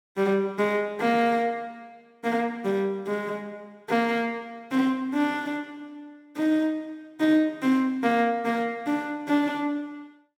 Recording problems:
none

